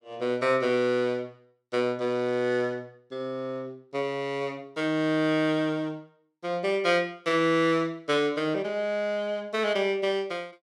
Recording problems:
none

